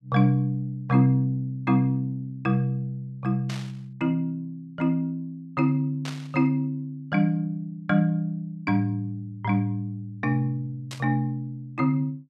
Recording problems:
burst of static; at 3.5 s, at 6 s and at 11 s; peak -7 dB vs average level

